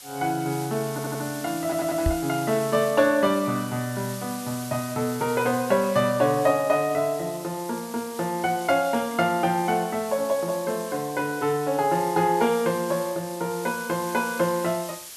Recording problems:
hiss; slope +2 dB per octave, SNR 14 dB
stutter; at 1 s and at 1.5 s
knock on the microphone; at 2 s; peak +3 dB vs average level

